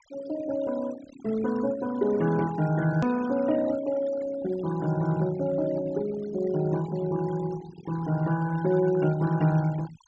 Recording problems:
treble cut off; nothing above 8 kHz
denoising artefacts; signal-to-artefact ratio 17 dB
click at an edit; at 3 s

